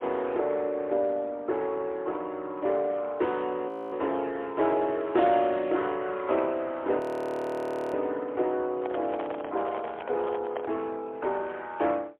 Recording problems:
phone line; 280 Hz to 3.4 kHz, AMR-NB, then MP3
frozen audio; at 3.5 s and at 7 s for 1 s
handling noise; from 9 to 11 s; peak -3 dB vs average level

